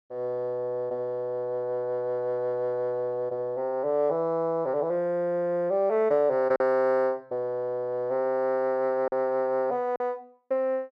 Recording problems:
lost packets; 1.1% of the sound replaced, filled with silence

